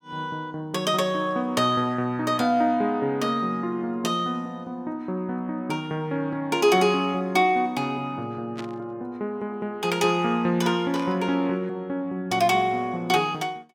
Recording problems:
burst of static; at 8.5 s and at 11 s; peak -10 dB vs average level

